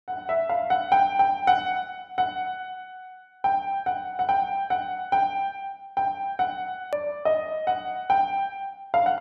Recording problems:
hard cut with a click; at 7 s

